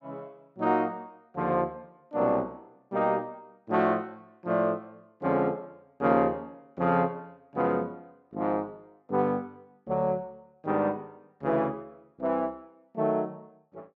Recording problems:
none

